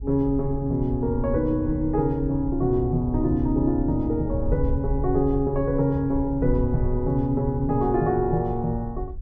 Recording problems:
wind noise; below 74 Hz, SNR 8 dB

